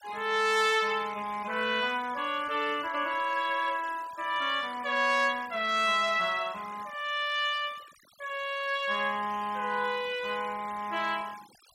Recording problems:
denoising artefacts; signal-to-artefact ratio 20 dB

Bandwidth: 16 kHz